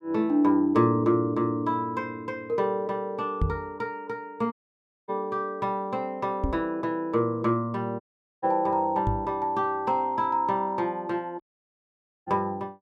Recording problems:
microphone thump; at 3.5 s, at 6.5 s and at 9 s; peak +4 dB vs average level
dropout; at 4.5 s for 0.5 s, at 8 s and at 11 s for 1 s

